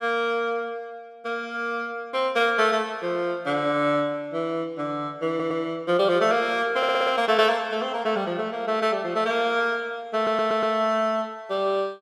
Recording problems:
stutter; at 5.5 s, at 7 s and at 10 s

